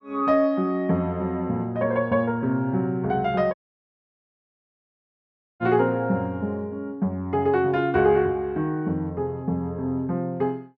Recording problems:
dropout; at 3.5 s for 2 s

